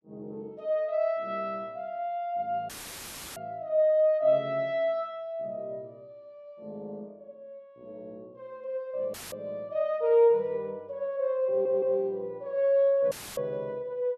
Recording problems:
audio cutting out; at 2.5 s for 0.5 s, at 9 s and at 13 s; filled with static
audio stuttering; at 11 s

